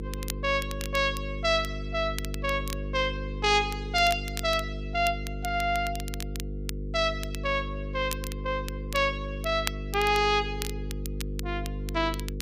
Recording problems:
electrical hum; 50 Hz, harmonics up to 500 Hz, SNR 7 dB
crackle; vinyl, SNR 13 dB

